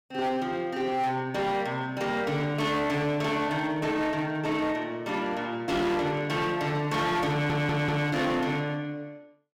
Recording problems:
distortion; hard clipping, signal-to-distortion ratio 10 dB
stutter; at 7.5 s

